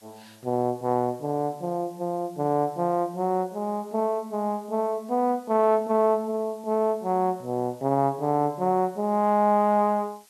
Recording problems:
hiss; slope +1 dB per octave, SNR 29 dB

